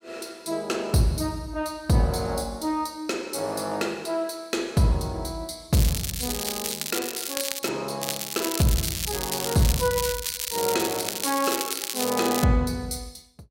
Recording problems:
crackle; from 5.5 to 7.5 s and from 8 to 12 s; loose cable, SNR 3 dB

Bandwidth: 16 kHz